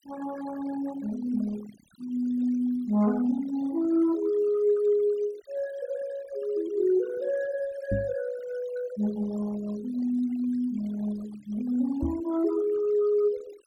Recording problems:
noise reduction artefacts; signal-to-artefact ratio 20 dB
knock on the microphone; at 8 s and at 12 s; peak +2 dB vs average level

